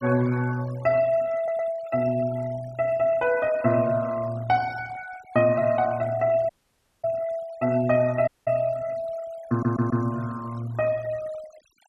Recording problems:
noise reduction artefacts; signal-to-artefact ratio 20 dB
audio stuttering; at 1.5 s and at 9.5 s
audio cutting out; at 6.5 s for 0.5 s and at 8.5 s

